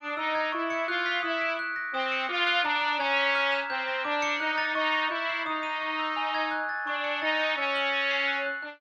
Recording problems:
none

